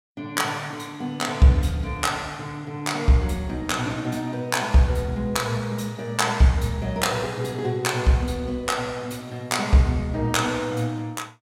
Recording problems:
none

